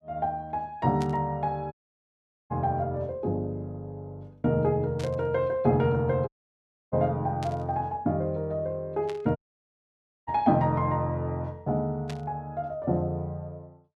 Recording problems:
static burst; 5 times, first at 1 s; peak -8 dB vs average level
dropout; at 1.5 s for 1 s, at 6.5 s for 0.5 s and at 9.5 s for 1 s

